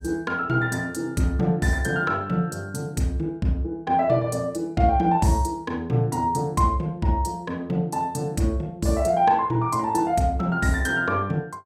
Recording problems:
none

